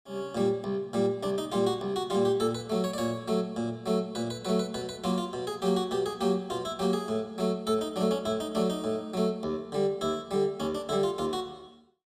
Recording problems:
none

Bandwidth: 15.5 kHz